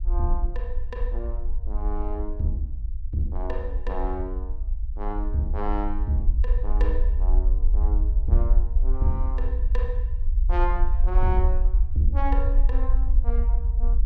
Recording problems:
rumble; below 48 Hz, SNR -5 dB

